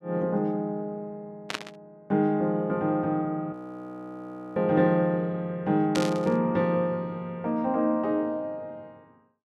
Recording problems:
static burst; at 1.5 s and at 6 s; peak +1 dB vs average level
frozen audio; at 3.5 s for 1 s

